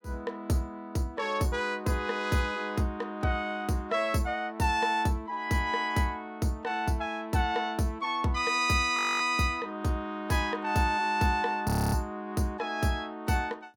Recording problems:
audio freezing; at 9 s and at 12 s

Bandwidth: 17.5 kHz